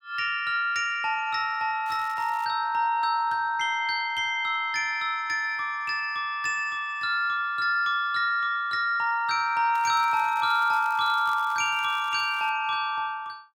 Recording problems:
crackle; at 2 s and from 10 to 13 s; loose cable, SNR 24 dB

